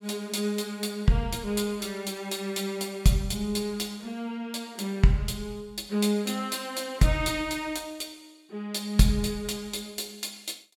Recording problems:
none

